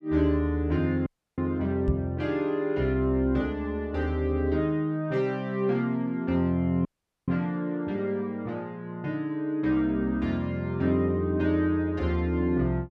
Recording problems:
audio cutting out; at 1 s and at 7 s
microphone thump; at 2 s; peak +5 dB vs average level

